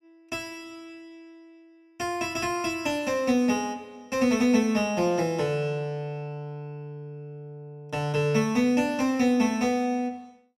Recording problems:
none

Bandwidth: 16 kHz